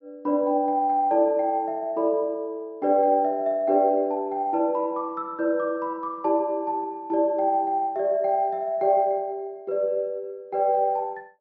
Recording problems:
treble cut off; nothing above 6.3 kHz

